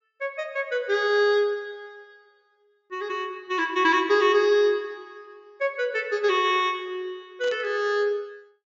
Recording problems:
treble cut off; nothing above 8 kHz
burst of static; at 7.5 s; peak -14 dB vs average level

